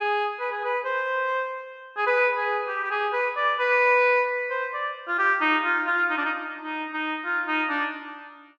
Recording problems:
none

